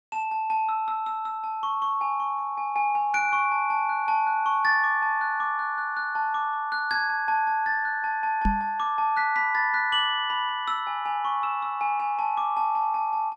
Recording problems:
knock on the microphone; at 8.5 s; peak +2 dB vs average level

